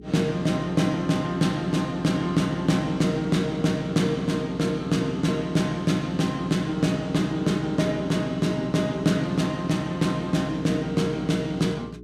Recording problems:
electrical hum; 60 Hz, harmonics up to 420 Hz, SNR 18 dB

